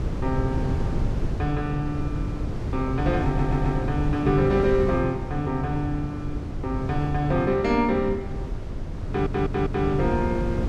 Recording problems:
wind noise; below 170 Hz, SNR 4 dB
stutter; at 3.5 s and at 9 s

